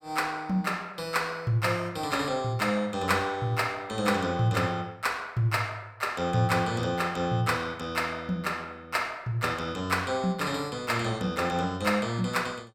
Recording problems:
none

